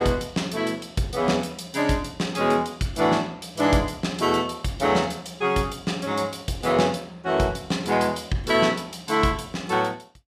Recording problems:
none

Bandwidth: 15 kHz